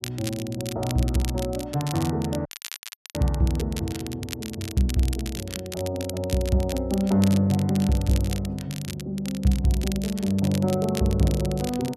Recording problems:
crackling; vinyl, SNR 13 dB
audio cutting out; at 2.5 s for 0.5 s

